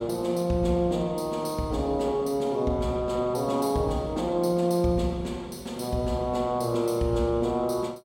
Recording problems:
none

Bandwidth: 16.5 kHz